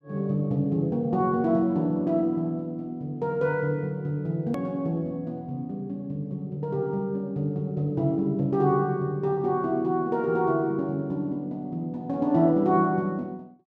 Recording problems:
click at an edit; at 4.5 s

